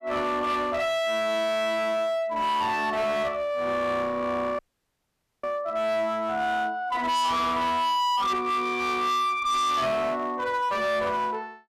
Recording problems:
distorted audio; hard clipping, uneven, signal-to-distortion ratio 7 dB
dropout; at 4.5 s for 1 s

